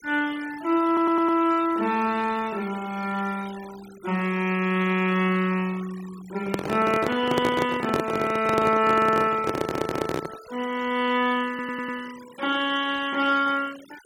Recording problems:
noise reduction artefacts; signal-to-artefact ratio 19 dB
stutter; at 1 s, at 9.5 s and at 11 s
microphone handling noise; from 6.5 to 10 s; peak +3 dB vs average level

